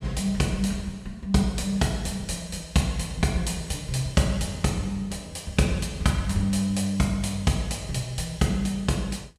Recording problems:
none

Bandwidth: 15.5 kHz